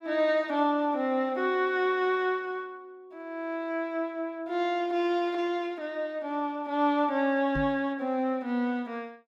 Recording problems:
microphone bump; at 7.5 s; peak -2 dB vs average level

